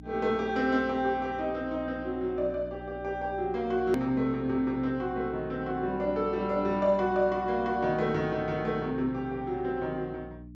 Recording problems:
low-pass filter; nothing above 8 kHz
hum; 60 Hz, harmonics up to 300 Hz, SNR 16 dB
edit click; at 4 s

